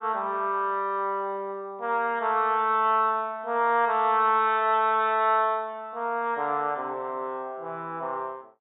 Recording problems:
treble cut off; nothing above 4 kHz

